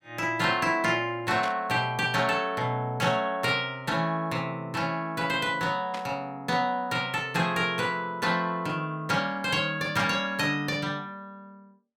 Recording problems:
static burst; 4 times, first at 1.5 s; peak -5 dB vs average level

